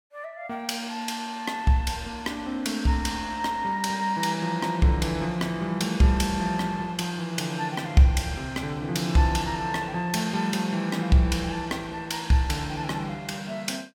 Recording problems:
none

